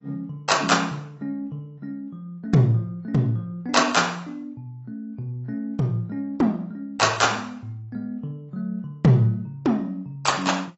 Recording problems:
codec artefacts; AAC, log-spectral distance 2 dB, nothing above 7.8 kHz

